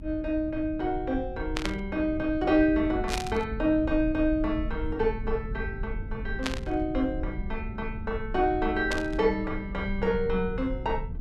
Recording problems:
rumble; below 84 Hz, SNR 9 dB
static burst; 4 times, first at 1.5 s; peak +2 dB vs average level

